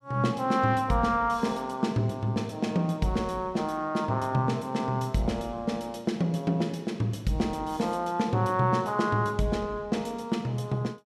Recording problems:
none

